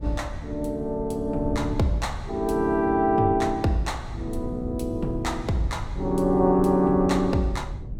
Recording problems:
wind on the microphone; below 110 Hz, SNR 11 dB

